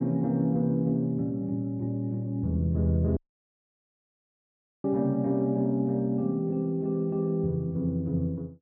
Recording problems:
dropout; at 3 s for 1.5 s

